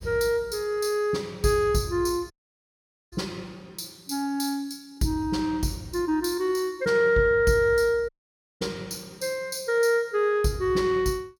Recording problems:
audio cutting out; at 2.5 s for 1 s and at 8 s for 0.5 s

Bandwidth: 18 kHz